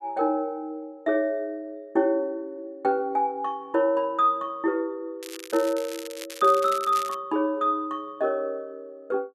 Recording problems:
crackling; from 5 to 7 s; loose cable, SNR 14 dB

